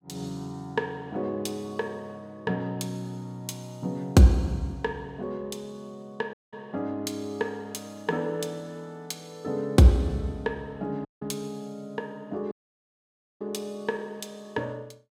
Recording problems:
dropout; at 6.5 s, at 11 s and at 13 s for 1 s

